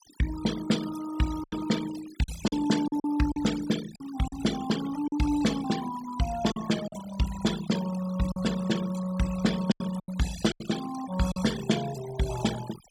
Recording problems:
denoising artefacts; signal-to-artefact ratio 11 dB
packet loss; 6% of the sound replaced, filled with silence

